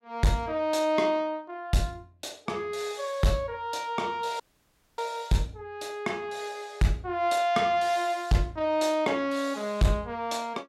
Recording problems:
distorted audio; hard clipping, signal-to-distortion ratio 12 dB
audio cutting out; at 4.5 s for 0.5 s

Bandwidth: 16 kHz